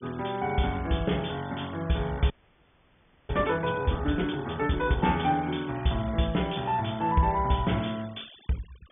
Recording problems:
low-pass filter; nothing above 3.5 kHz
denoising artefacts; signal-to-artefact ratio 22 dB
frozen audio; at 2.5 s for 1 s

